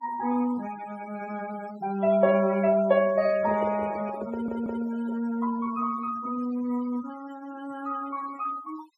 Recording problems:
denoising artefacts; signal-to-artefact ratio 17 dB
handling noise; from 3.5 to 5.5 s; peak -3 dB vs average level
stutter; at 4.5 s

